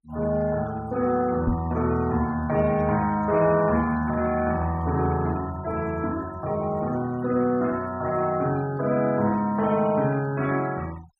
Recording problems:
noise reduction artefacts; signal-to-artefact ratio 21 dB
microphone bump; at 1.5 s; peak +2 dB vs average level

